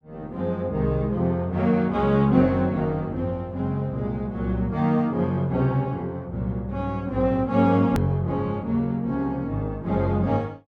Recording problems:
edit click; at 8 s

